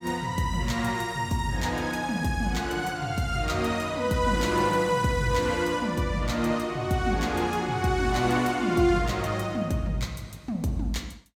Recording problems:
none

